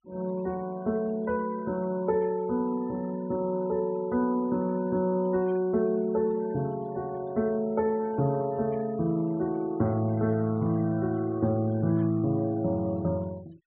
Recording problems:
treble missing; nothing above 4 kHz
noise reduction artefacts; signal-to-artefact ratio 26 dB

